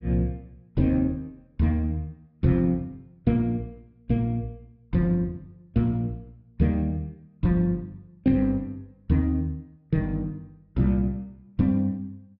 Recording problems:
low-pass filter; nothing above 5.5 kHz

